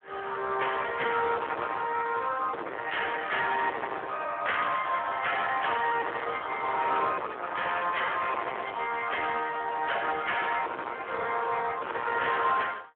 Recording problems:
phone line; 340 Hz to 3.3 kHz, Speex
distortion; hard clipping, signal-to-distortion ratio 6 dB

